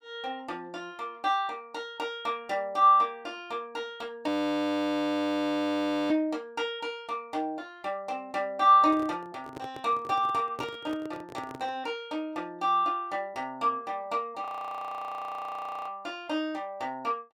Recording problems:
audio freezing; at 4.5 s for 2 s and at 14 s for 1.5 s
microphone handling noise; from 9 to 12 s; peak -6 dB vs average level

